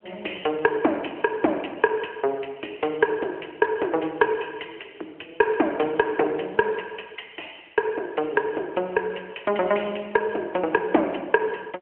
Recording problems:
telephone audio; 260 Hz to 3.1 kHz, AMR-NB

